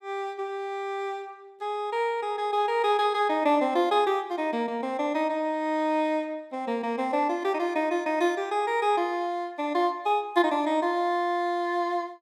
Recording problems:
none

